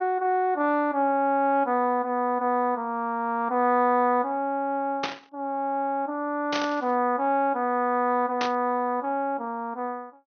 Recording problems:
treble cut off; nothing above 6.4 kHz
static burst; at 5 s, at 6.5 s and at 8.5 s; peak 0 dB vs average level

